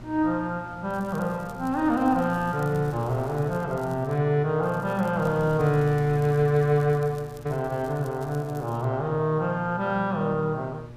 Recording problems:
hum; 60 Hz, harmonics up to 1.2 kHz, SNR 16 dB
wind noise; below 520 Hz, SNR 21 dB
crackling; from 1 to 4 s and from 4.5 to 9 s; loose cable, SNR 28 dB

